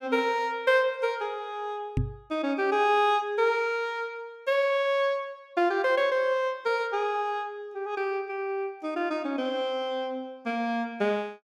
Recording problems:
microphone thump; at 2 s; peak +3 dB vs average level

